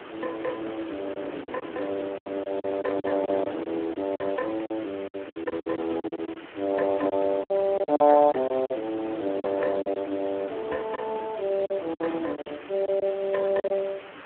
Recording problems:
telephone audio; 240 Hz to 3.3 kHz, Speex
hiss; SNR 17 dB
wind noise; below 720 Hz, SNR 14 dB
lost packets; 11% of the sound replaced, filled with silence
crackle; at 4.5 s and from 5.5 to 8.5 s; loose cable, SNR 28 dB

